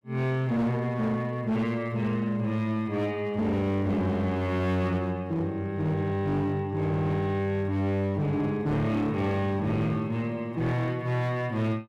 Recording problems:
distorted audio; hard clipping, signal-to-distortion ratio 10 dB

